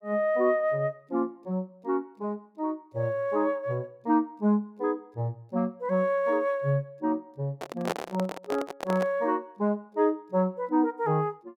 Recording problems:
handling noise; from 7.5 to 9 s; peak +2 dB vs average level

